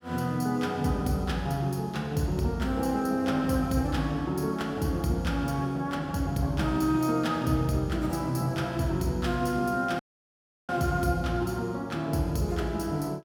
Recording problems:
dropout; at 10 s for 0.5 s

